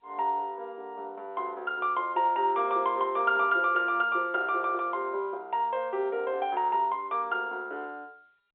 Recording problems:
telephone audio; 340 Hz to 3.8 kHz, G.711

